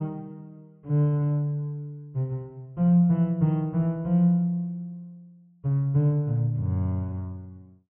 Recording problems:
low-pass filter; nothing above 3.2 kHz

